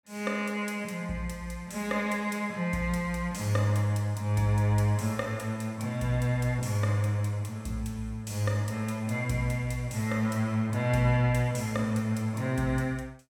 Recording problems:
none

